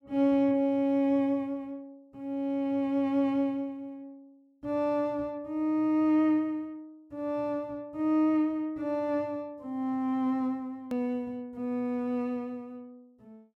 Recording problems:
edit click; at 11 s

